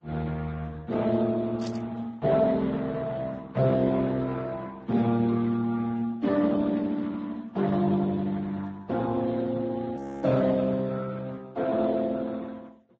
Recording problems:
lossy compression; Speex, then Vorbis, log-spectral distance 3 dB, nothing above 7.6 kHz
burst of static; at 1.5 s; peak -11 dB vs average level
audio freezing; at 10 s

